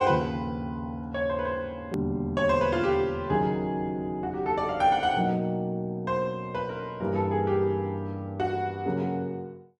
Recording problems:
edit click; at 2 s

